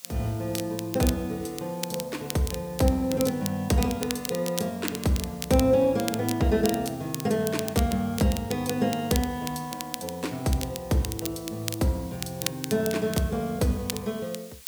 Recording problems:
background hiss; slope +3 dB per octave, SNR 20 dB
crackle; vinyl, SNR 9 dB

